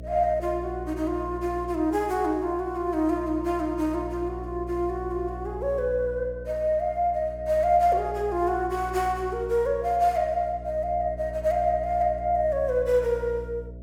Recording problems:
hum; 60 Hz, harmonics up to 660 Hz, SNR 13 dB

